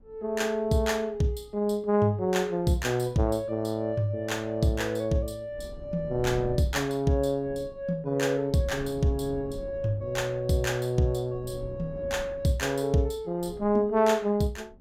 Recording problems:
wind noise; below 220 Hz, SNR 17 dB

